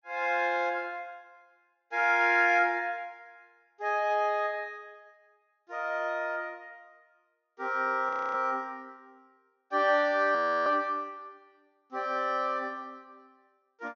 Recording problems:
treble cut off; nothing above 6.6 kHz
audio freezing; at 8 s and at 10 s

